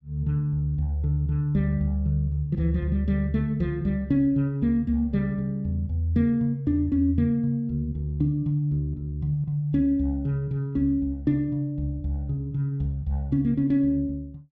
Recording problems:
none

